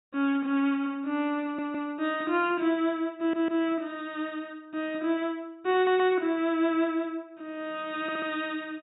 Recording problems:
treble missing; nothing above 4 kHz
stutter; 4 times, first at 1.5 s

